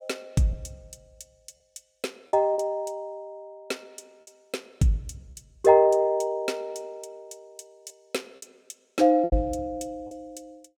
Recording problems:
packet loss; 3% of the sound replaced, filled with repeated pitch periods

